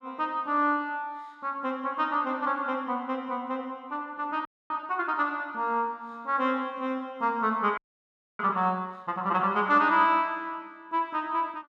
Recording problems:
frozen audio; at 4.5 s and at 8 s for 0.5 s

